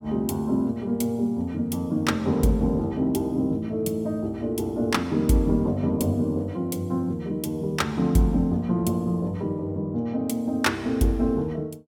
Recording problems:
none

